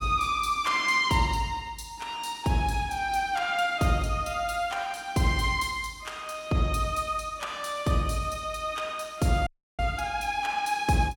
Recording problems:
audio cutting out; at 9.5 s

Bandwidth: 17 kHz